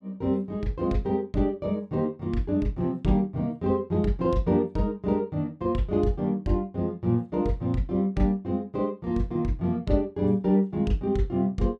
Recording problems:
none

